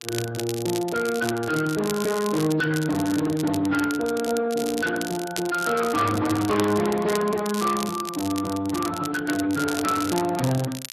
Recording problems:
lossy compression; Vorbis, then Speex, log-spectral distance 3 dB
distorted audio; soft clipping, signal-to-distortion ratio 11 dB
crackle; vinyl, SNR 11 dB

